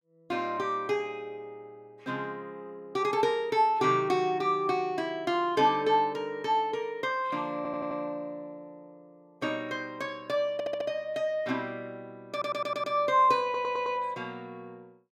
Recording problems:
audio stuttering; 4 times, first at 7.5 s

